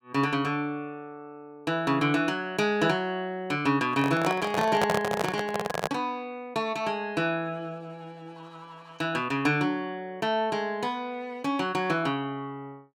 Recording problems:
microphone handling noise; from 4 to 6 s; peak +4 dB vs average level

